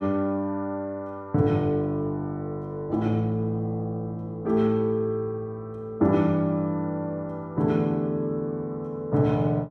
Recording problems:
none

